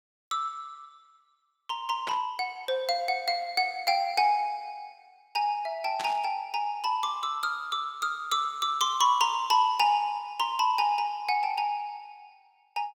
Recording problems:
burst of static; at 2 s and at 6 s; peak -4 dB vs average level

